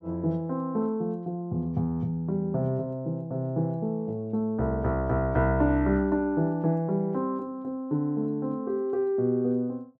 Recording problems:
none

